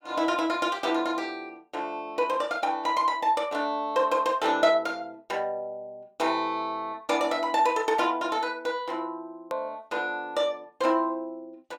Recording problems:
edit click; at 9.5 s

